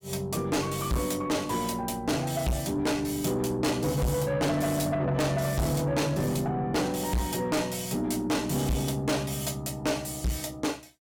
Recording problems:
distorted audio; soft clipping, signal-to-distortion ratio 6 dB

